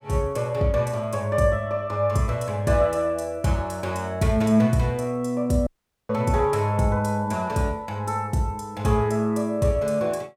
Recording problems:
dropout; at 5.5 s

